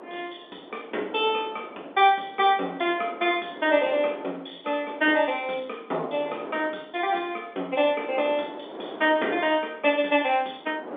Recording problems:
telephone audio; 240 Hz to 3.6 kHz, G.711
wind noise; below 790 Hz, SNR 17 dB

